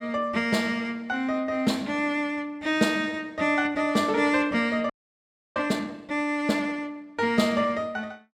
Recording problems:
frozen audio; at 5 s for 0.5 s

